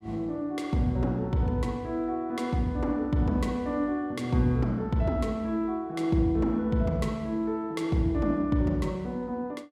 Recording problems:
none

